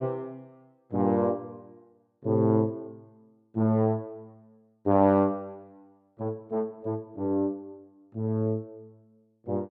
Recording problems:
none

